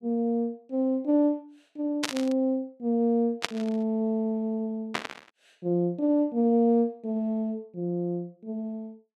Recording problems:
burst of static; at 2 s, at 3.5 s and at 5 s; peak +4 dB vs average level

